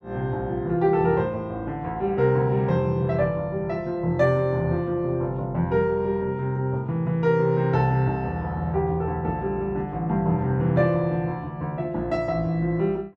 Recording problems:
none

